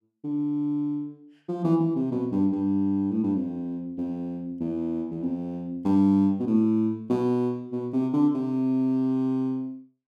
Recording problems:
none

